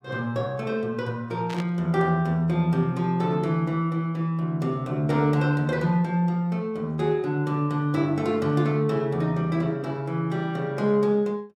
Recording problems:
burst of static; at 1.5 s; peak -9 dB vs average level

